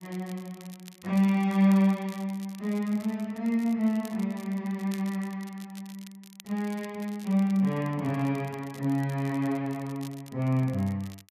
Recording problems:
crackle; vinyl, SNR 23 dB

